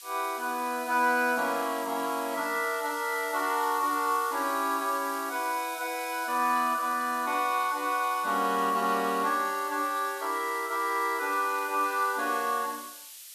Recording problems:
hiss; SNR 14 dB

